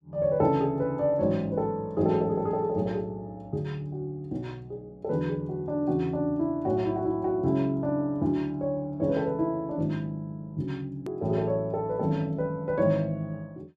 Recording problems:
edit click; at 11 s

